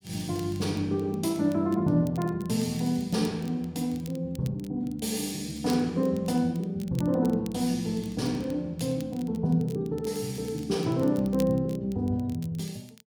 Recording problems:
crackle; vinyl, SNR 23 dB

